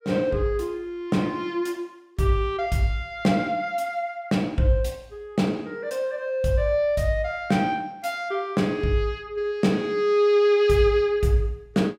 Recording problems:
none

